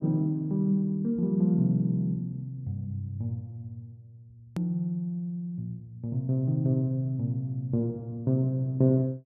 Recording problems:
click at an edit; at 4.5 s

